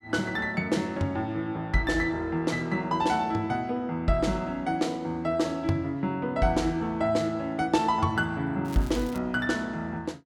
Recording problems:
crackle; at 8.5 s; loose cable, SNR 21 dB

